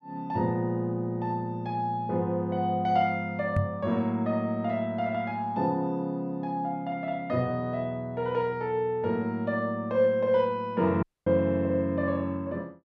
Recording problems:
microphone bump; at 3.5 s; peak +4 dB vs average level
dropout; at 11 s

